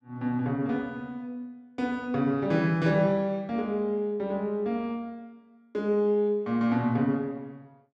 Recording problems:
none

